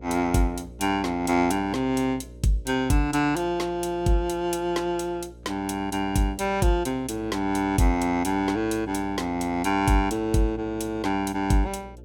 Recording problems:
hum; 60 Hz, harmonics up to 600 Hz, SNR 19 dB

